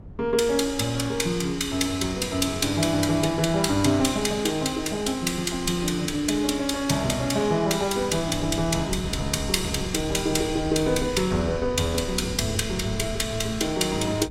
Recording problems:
wind noise; below 150 Hz, SNR 15 dB

